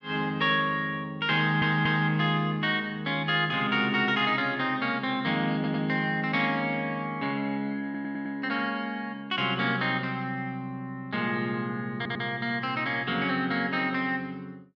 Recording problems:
audio stuttering; 4 times, first at 1.5 s

